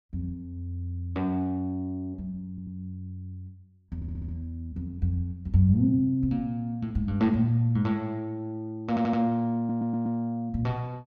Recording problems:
stutter; 4 times, first at 2.5 s

